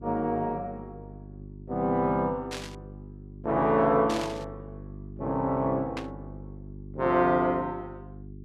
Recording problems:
hum; 50 Hz, harmonics up to 400 Hz, SNR 16 dB
burst of static; at 2.5 s, at 4 s and at 6 s; peak -6 dB vs average level

